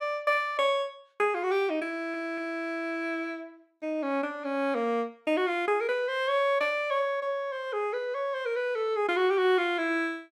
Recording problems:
audio stuttering; at 2 s

